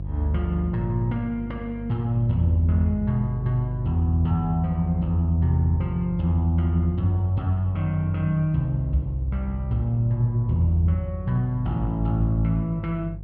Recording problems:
hum; 50 Hz, harmonics up to 350 Hz, SNR 11 dB

